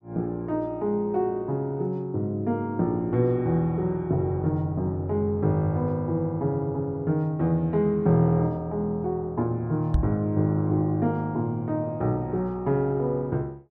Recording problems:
knock on the microphone; at 10 s; peak +6 dB vs average level

